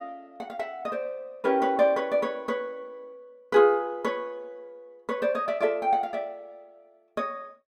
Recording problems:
none

